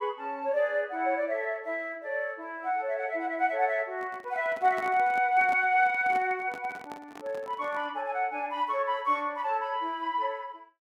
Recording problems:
microphone handling noise; from 4 to 8 s; peak -8 dB vs average level

